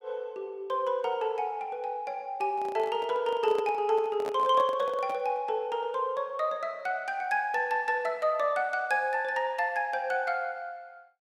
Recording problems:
handling noise; from 2.5 to 5.5 s; peak -6 dB vs average level

